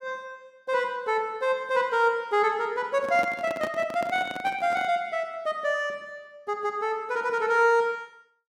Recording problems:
handling noise; from 3 to 5 s; peak -4 dB vs average level

